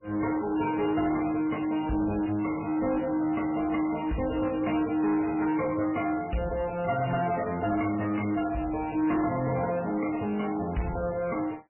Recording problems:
codec artefacts; MP3, log-spectral distance 6 dB, nothing above 2.8 kHz
distorted audio; soft clipping, signal-to-distortion ratio 10 dB

